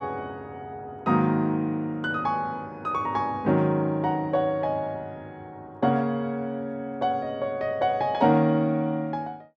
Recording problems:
none

